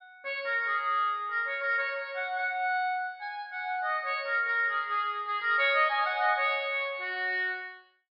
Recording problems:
treble cut off; nothing above 5.5 kHz

